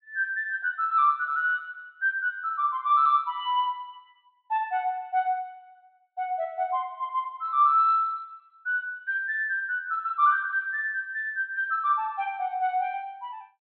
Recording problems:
treble missing; nothing above 4 kHz

